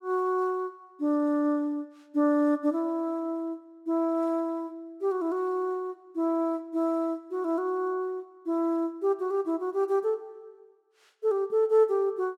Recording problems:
none

